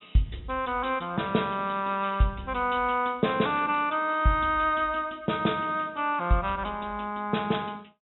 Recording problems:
treble missing; nothing above 3.8 kHz

